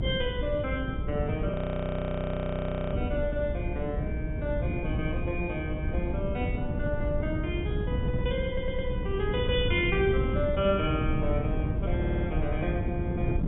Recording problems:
low-pass filter; nothing above 4 kHz
hum; 60 Hz, harmonics up to 480 Hz, SNR 7 dB
wind noise; below 170 Hz, SNR 1 dB
audio freezing; at 1.5 s for 1.5 s
stutter; at 8.5 s and at 12 s

